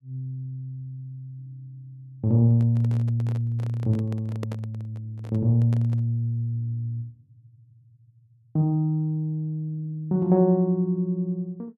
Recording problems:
microphone handling noise; from 2.5 to 6 s; peak -6 dB vs average level

